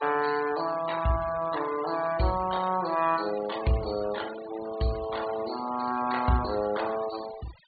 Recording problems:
treble missing; nothing above 4.5 kHz
denoising artefacts; signal-to-artefact ratio 14 dB

